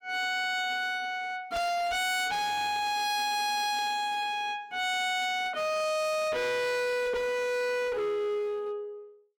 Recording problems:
distortion; hard clipping, signal-to-distortion ratio 5 dB

